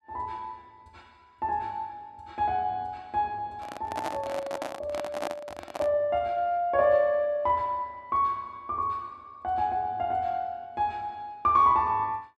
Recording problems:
handling noise; from 3.5 to 6 s; peak -1 dB vs average level

